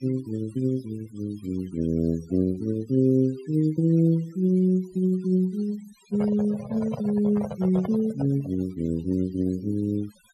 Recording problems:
noise reduction artefacts; signal-to-artefact ratio 21 dB
microphone handling noise; from 6 to 8.5 s; peak -3 dB vs average level

